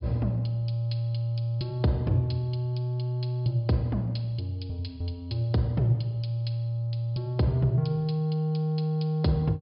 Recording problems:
treble cut off; nothing above 5.5 kHz

